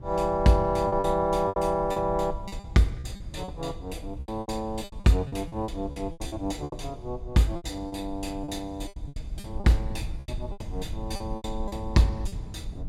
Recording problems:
rumble; below 92 Hz, SNR 12 dB
lost packets; 14% of the sound replaced, filled with repeated pitch periods

